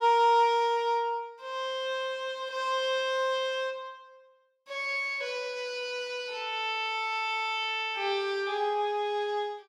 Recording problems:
none

